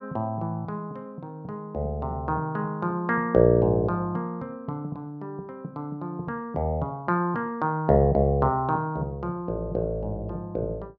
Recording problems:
none

